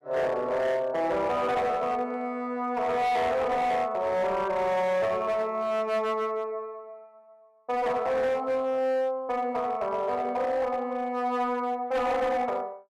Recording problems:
distortion; hard clipping, signal-to-distortion ratio 11 dB

